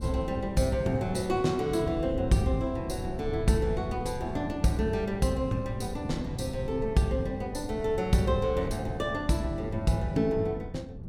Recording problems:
wind on the microphone; below 180 Hz, SNR 9 dB

